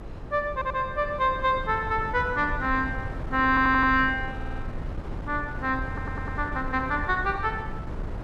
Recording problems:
hum; 50 Hz, harmonics up to 550 Hz, SNR 22 dB
wind on the microphone; below 190 Hz, SNR 10 dB
audio stuttering; 4 times, first at 0.5 s

